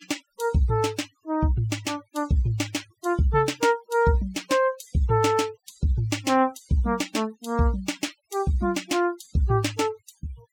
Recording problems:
denoising artefacts; signal-to-artefact ratio 21 dB

